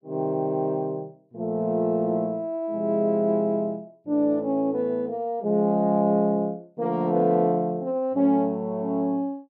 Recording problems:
none

